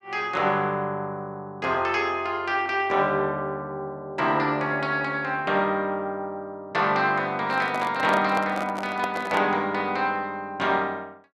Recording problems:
handling noise; from 7.5 to 9.5 s; peak -2 dB vs average level

